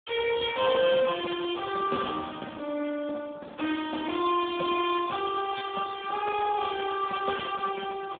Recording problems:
telephone audio; 240 Hz to 3.5 kHz, Speex

